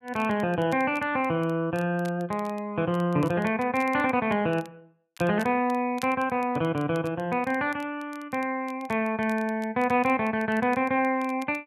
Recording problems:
crackle; vinyl, SNR 25 dB

